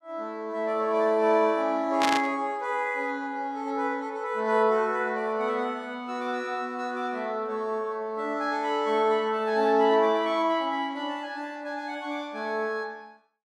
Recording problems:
static burst; at 2 s; peak +3 dB vs average level

